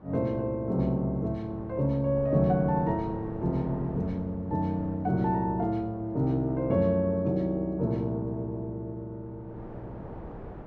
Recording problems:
wind on the microphone; below 540 Hz, SNR 18 dB

